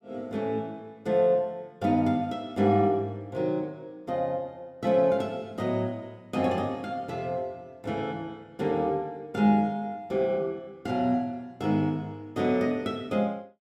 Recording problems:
none

